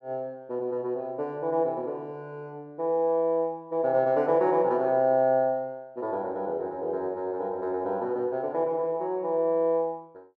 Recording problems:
none

